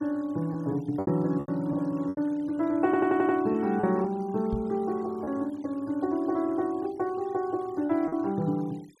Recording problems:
denoising artefacts; signal-to-artefact ratio 27 dB
lost packets; 5% of the sound replaced, filled with repeated pitch periods
stutter; at 3 s
knock on the microphone; at 4.5 s; peak -2 dB vs average level

